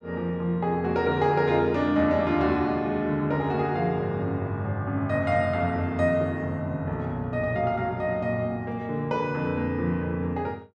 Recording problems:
none

